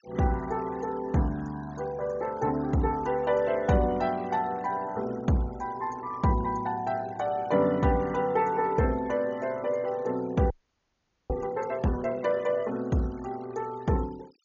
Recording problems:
treble missing; nothing above 6.8 kHz
noise reduction artefacts; signal-to-artefact ratio 22 dB
frozen audio; at 11 s for 1 s

